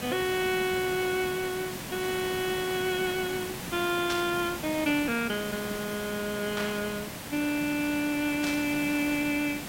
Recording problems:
background hiss; slope -3 dB per octave, SNR 7 dB
burst of static; at 4 s, at 6.5 s and at 8.5 s; peak -1 dB vs average level

